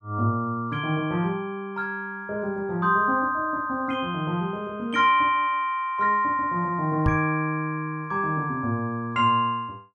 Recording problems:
microphone bump; at 7 s; peak +4 dB vs average level

